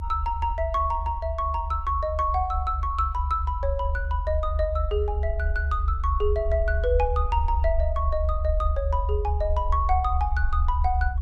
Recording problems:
low-frequency rumble; below 72 Hz, SNR 1 dB

